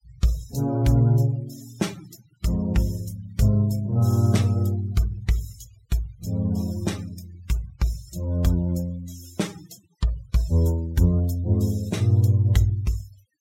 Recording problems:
denoising artefacts; signal-to-artefact ratio 24 dB

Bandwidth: 16 kHz